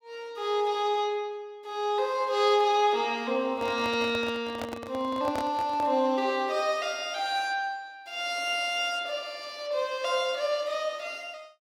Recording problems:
handling noise; from 3.5 to 6 s; peak -4 dB vs average level

